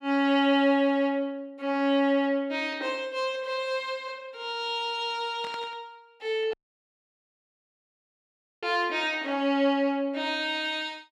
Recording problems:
burst of static; at 5.5 s; peak -11 dB vs average level
dropout; at 6.5 s for 2 s

